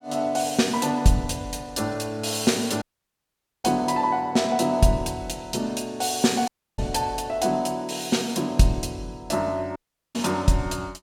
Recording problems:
dropout; at 3 s for 1 s, at 6.5 s and at 10 s

